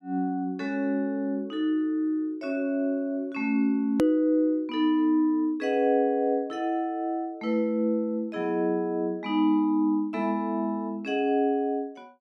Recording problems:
edit click; at 4 s

